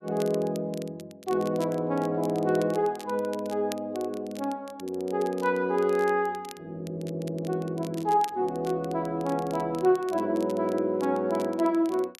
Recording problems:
crackling; vinyl, SNR 21 dB

